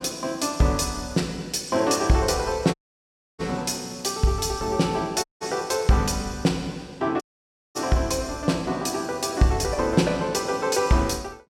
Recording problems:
audio cutting out; at 2.5 s for 0.5 s, at 5 s and at 7 s for 0.5 s

